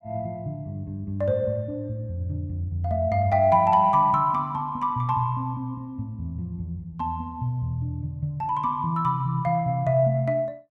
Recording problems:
none

